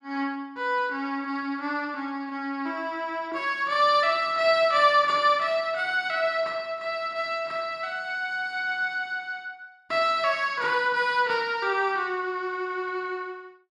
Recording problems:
none

